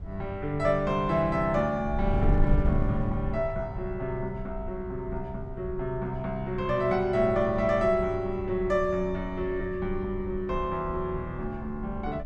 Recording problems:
wind noise; below 92 Hz, SNR 8 dB

